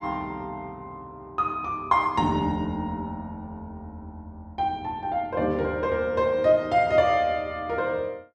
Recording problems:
none

